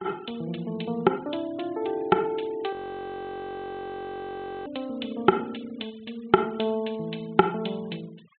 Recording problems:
treble missing; nothing above 4 kHz
noise reduction artefacts; signal-to-artefact ratio 25 dB
frozen audio; at 2.5 s for 2 s

